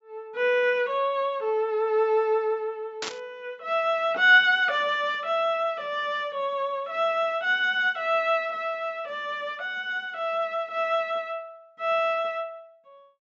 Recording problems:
treble cut off; nothing above 8 kHz
burst of static; at 3 s; peak -3 dB vs average level

